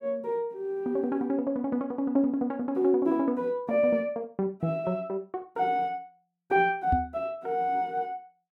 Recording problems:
microphone thump; at 7 s; peak +4 dB vs average level

